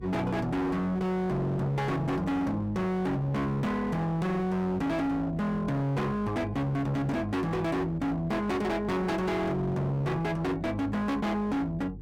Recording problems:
distortion; hard clipping, signal-to-distortion ratio 7 dB
hum; 50 Hz, harmonics up to 600 Hz, SNR 16 dB

